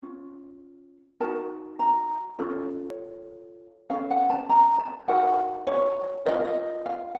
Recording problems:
lossy codec; Opus, log-spectral distance 3 dB
hard cut with a click; at 3 s

